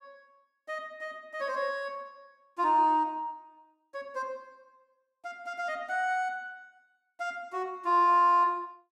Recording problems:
none

